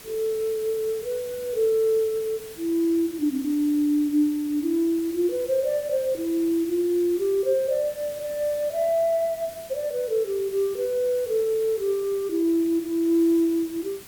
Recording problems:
hiss; slope -2 dB per octave, SNR 18 dB

